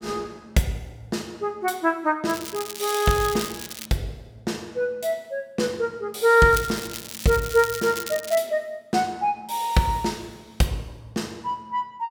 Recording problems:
crackling; from 2.5 to 4 s and from 6.5 to 8.5 s; loose cable, SNR 10 dB

